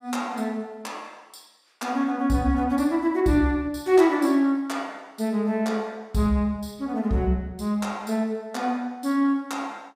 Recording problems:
none

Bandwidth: 15.5 kHz